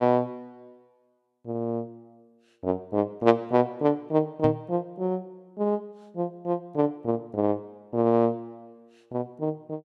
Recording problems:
microphone thump; at 4.5 s; peak +2 dB vs average level

